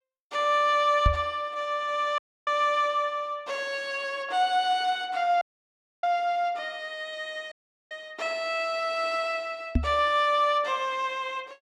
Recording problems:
microphone bump; at 1 s and at 10 s; peak +6 dB vs average level
audio cutting out; at 2 s, at 5.5 s for 0.5 s and at 7.5 s

